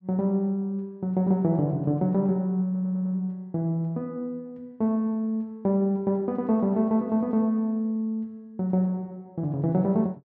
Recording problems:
stutter; at 2.5 s

